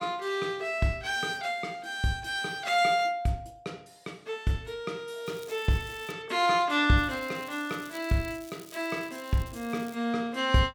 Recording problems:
crackle; at 5.5 s and from 7 to 10 s; loose cable, SNR 21 dB

